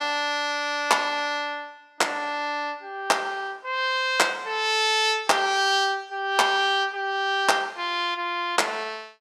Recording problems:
none

